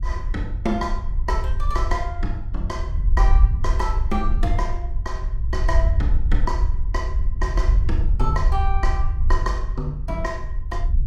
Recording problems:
low-frequency rumble; below 60 Hz, SNR -5 dB

